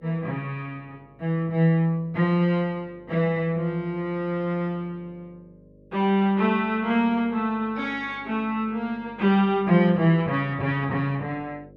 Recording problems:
electrical hum; 50 Hz, harmonics up to 600 Hz, SNR 27 dB

